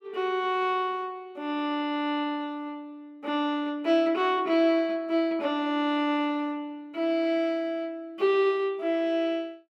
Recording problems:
none

